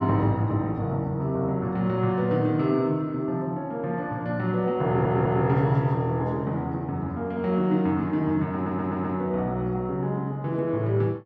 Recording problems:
audio stuttering; at 5 s and at 8.5 s

